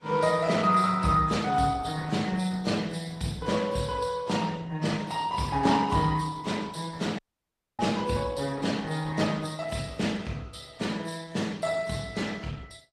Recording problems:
lossy compression; AAC, then Opus, log-spectral distance 4 dB
dropout; at 7 s for 0.5 s

